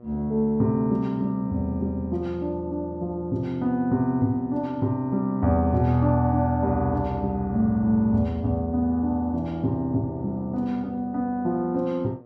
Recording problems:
hum; 60 Hz, harmonics up to 1.3 kHz, SNR 24 dB

